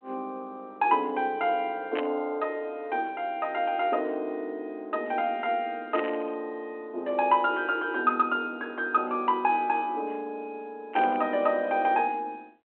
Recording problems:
telephone audio; 260 Hz to 3.3 kHz, G.726
burst of static; at 2 s, at 6 s and at 11 s; peak -5 dB vs average level

